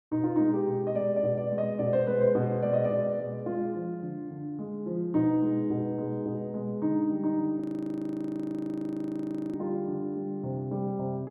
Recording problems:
frozen audio; at 7.5 s for 2 s

